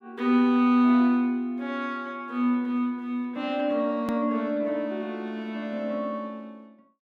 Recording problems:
edit click; at 4 s

